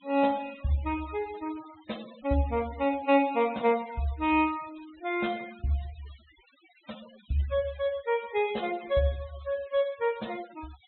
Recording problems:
treble missing; nothing above 4 kHz
denoising artefacts; signal-to-artefact ratio 21 dB

